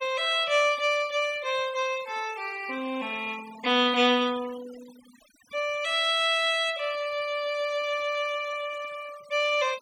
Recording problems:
noise reduction artefacts; signal-to-artefact ratio 20 dB

